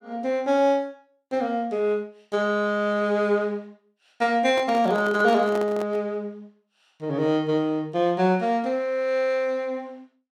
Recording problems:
handling noise; from 4.5 to 6 s; peak -6 dB vs average level

